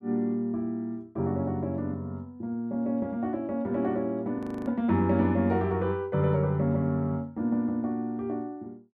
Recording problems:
frozen audio; at 4.5 s

